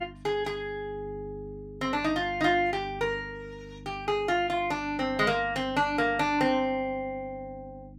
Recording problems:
hum; 50 Hz, harmonics up to 300 Hz, SNR 17 dB

